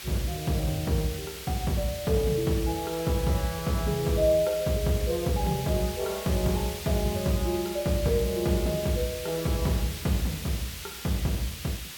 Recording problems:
hiss; slope +2 dB per octave, SNR 10 dB

